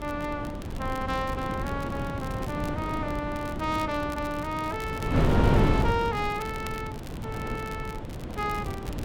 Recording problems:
wind noise; below 380 Hz, SNR -1 dB
crackling; vinyl, SNR 16 dB

